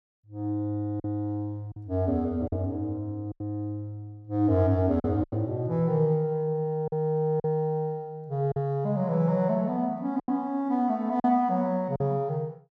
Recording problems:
lost packets; 5% of the sound replaced, filled with silence

